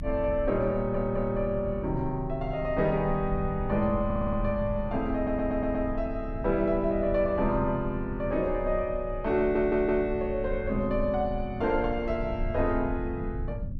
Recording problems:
low-frequency rumble; below 90 Hz, strongest tone 30 Hz, SNR 10 dB
stutter; 4 times, first at 1 s

